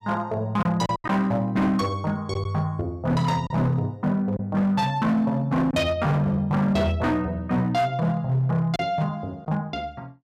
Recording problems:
distorted audio; hard clipping, signal-to-distortion ratio 11 dB
lost packets; 3% of the sound replaced, filled with silence

